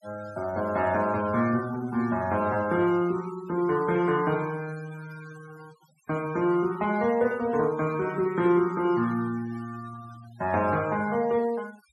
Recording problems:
noise reduction artefacts; signal-to-artefact ratio 20 dB

